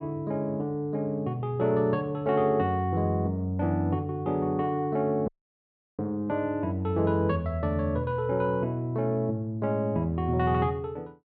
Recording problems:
audio cutting out; at 5.5 s for 0.5 s

